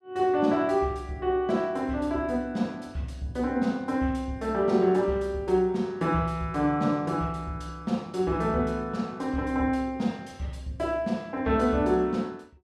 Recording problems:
none

